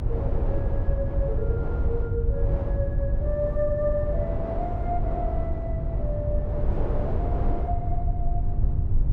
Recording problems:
electrical hum; 50 Hz, harmonics up to 400 Hz, SNR 2 dB
rumble; below 86 Hz, SNR -4 dB
wind on the microphone; below 630 Hz, SNR 4 dB

